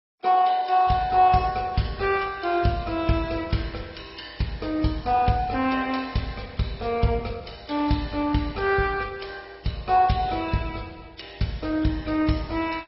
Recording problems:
codec artefacts; Vorbis, then MP2, log-spectral distance 4 dB, nothing above 5.5 kHz

